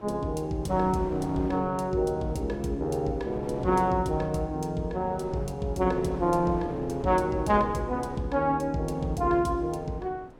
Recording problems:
wind noise; below 570 Hz, SNR 16 dB

